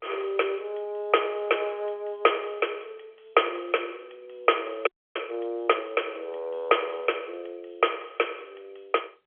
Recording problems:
telephone audio; 320 Hz to 3.4 kHz, G.711
frozen audio; at 5 s

